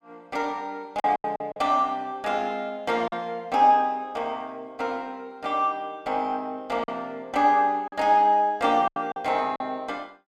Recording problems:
lost packets; 5% of the sound replaced, filled with silence

